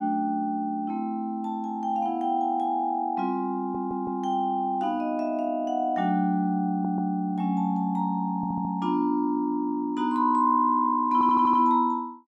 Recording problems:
audio stuttering; 4 times, first at 3.5 s

